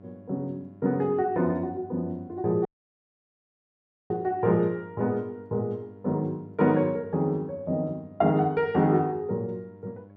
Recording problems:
electrical hum; 50 Hz, harmonics up to 1.1 kHz, SNR 23 dB
dropout; at 2.5 s for 1.5 s

